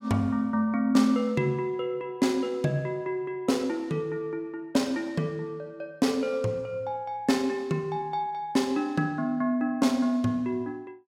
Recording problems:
none

